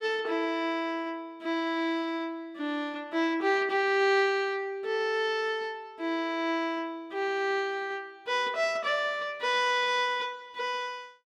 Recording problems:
none

